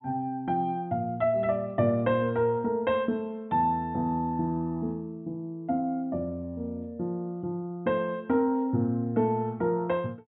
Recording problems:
treble cut off; nothing above 4.1 kHz

